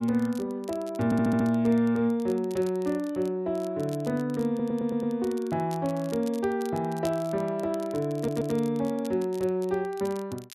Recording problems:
crackle; vinyl, SNR 22 dB
stutter; at 1 s, at 4.5 s and at 8 s

